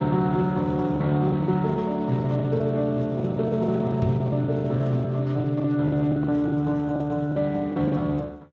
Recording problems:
lossy codec; Speex, log-spectral distance 2 dB
lost packets; 14% of the sound replaced, filled with the last packet
microphone bump; at 4 s; peak +4 dB vs average level

